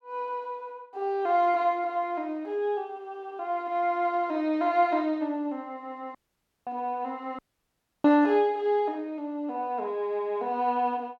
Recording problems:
dropout; at 6 s for 0.5 s and at 7.5 s for 0.5 s

